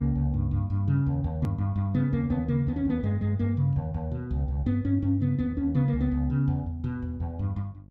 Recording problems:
hum; 50 Hz, harmonics up to 600 Hz, SNR 26 dB
click at an edit; at 1.5 s

